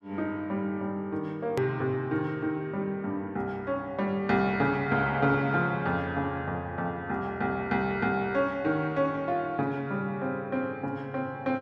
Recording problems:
edit click; at 1.5 s

